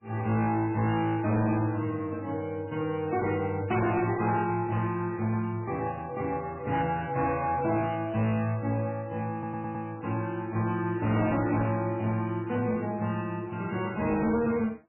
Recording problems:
lossy codec; MP3, log-spectral distance 3 dB, nothing above 2.8 kHz
distortion; hard clipping, signal-to-distortion ratio 10 dB
stutter; at 9.5 s

